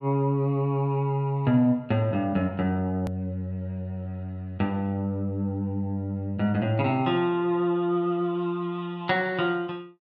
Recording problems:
hard cut with a click; at 3 s

